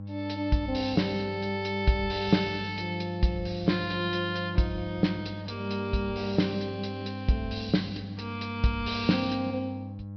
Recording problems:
treble missing; nothing above 5.5 kHz
electrical hum; 50 Hz, harmonics up to 800 Hz, SNR 10 dB

